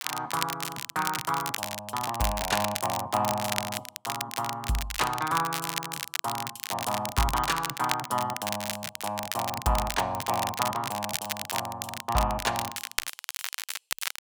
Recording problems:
crackle; vinyl, SNR 3 dB

